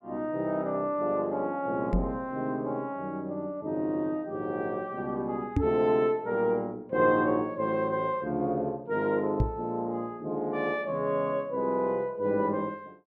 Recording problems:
microphone bump; at 2 s, at 5.5 s and at 9.5 s; peak +6 dB vs average level

